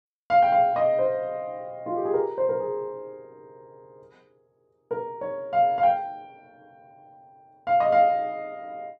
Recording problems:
none

